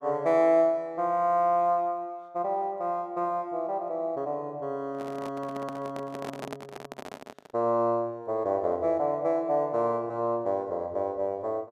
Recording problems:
handling noise; from 5 to 7.5 s; peak -5 dB vs average level

